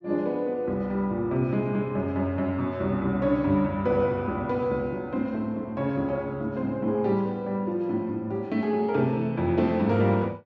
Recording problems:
treble cut off; nothing above 8 kHz

